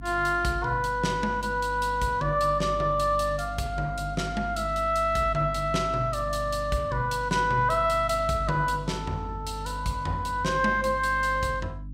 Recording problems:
electrical hum; 50 Hz, harmonics up to 300 Hz, SNR 12 dB

